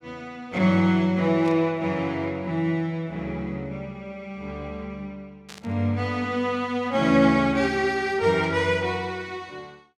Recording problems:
static burst; at 1.5 s, at 5.5 s and at 8.5 s; peak -14 dB vs average level

